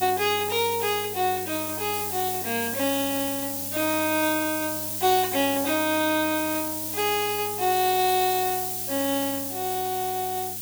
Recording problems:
electrical hum; 50 Hz, harmonics up to 700 Hz, SNR 19 dB
hiss; slope +4 dB per octave, SNR 3 dB

